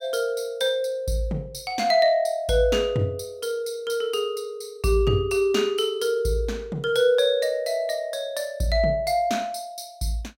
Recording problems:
none

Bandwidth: 16.5 kHz